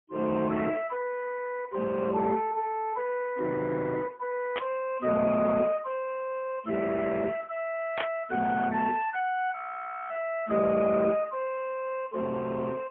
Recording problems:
telephone audio; 190 Hz to 3.3 kHz, AMR-NB, then MP3
burst of static; at 4.5 s and at 8 s; peak +2 dB vs average level
audio freezing; at 9.5 s for 0.5 s

